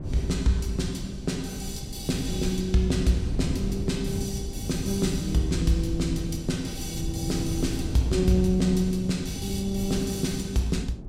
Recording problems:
wind on the microphone; below 180 Hz, SNR 7 dB

